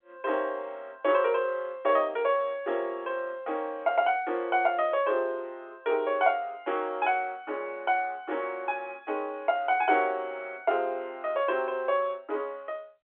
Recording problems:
telephone audio; 280 Hz to 3.6 kHz, G.711

